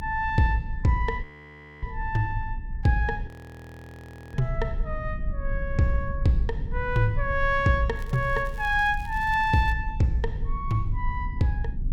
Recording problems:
low-frequency rumble; below 60 Hz, strongest tone 30 Hz, SNR 8 dB
frozen audio; at 1 s for 0.5 s and at 3.5 s for 1 s
crackle; from 8 to 9.5 s; loose cable, SNR 26 dB

